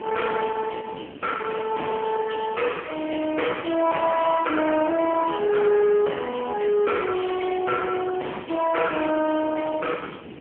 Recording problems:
phone line; 260 Hz to 3.1 kHz, AMR-NB
distorted audio; soft clipping, signal-to-distortion ratio 10 dB
background hiss; SNR 27 dB
wind noise; below 1.3 kHz, SNR 17 dB

